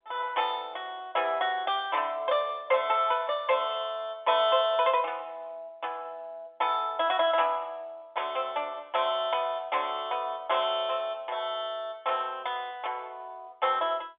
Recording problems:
telephone audio; 320 Hz to 3.6 kHz, G.711

